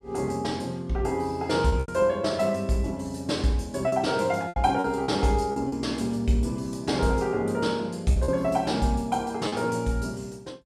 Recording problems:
packet loss; 5% of the sound replaced, filled with repeated pitch periods

